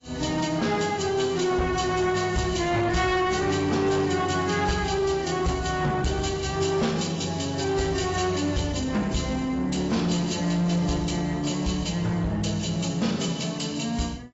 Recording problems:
codec artefacts; AAC, log-spectral distance 5 dB, nothing above 7.3 kHz
distorted audio; soft clipping, signal-to-distortion ratio 12 dB

